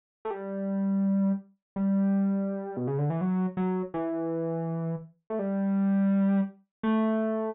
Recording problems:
treble cut off; nothing above 4 kHz

